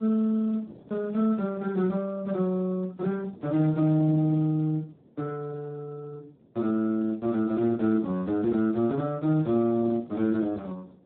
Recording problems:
telephone audio; 110 Hz to 2 kHz, Speex
wind on the microphone; below 420 Hz, SNR 25 dB

